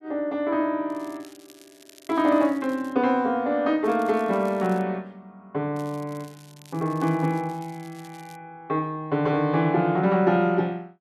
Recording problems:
crackle; from 1 to 3 s, at 4 s and from 6 to 8.5 s; loose cable, SNR 27 dB

